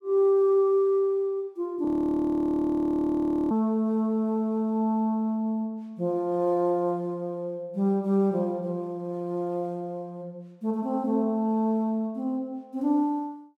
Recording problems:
audio freezing; at 2 s for 1.5 s

